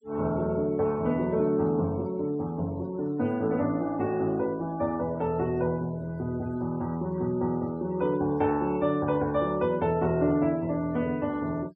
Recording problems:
noise reduction artefacts; signal-to-artefact ratio 26 dB

